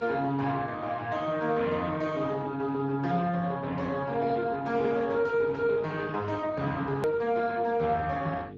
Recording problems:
lossy compression; Speex, log-spectral distance 3 dB, nothing above 13.1 kHz
hum; 50 Hz, harmonics up to 550 Hz, SNR 16 dB
click at an edit; at 7 s

